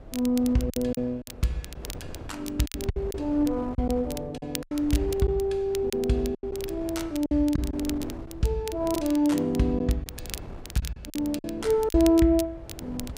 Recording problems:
wind on the microphone; below 380 Hz, SNR 16 dB
crackling; vinyl, SNR 15 dB
lost packets; 8% of the sound replaced, filled with silence

